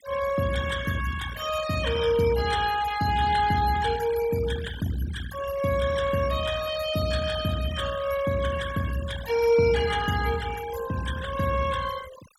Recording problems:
denoising artefacts; signal-to-artefact ratio 13 dB

